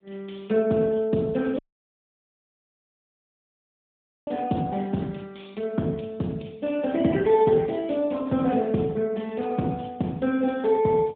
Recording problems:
telephone audio; 110 Hz to 3.5 kHz, AMR-NB
dropout; at 1.5 s for 2.5 s

